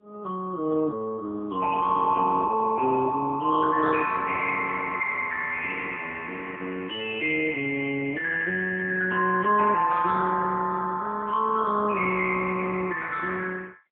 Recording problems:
phone line; 320 Hz to 2.5 kHz, AMR-NB, then MP3

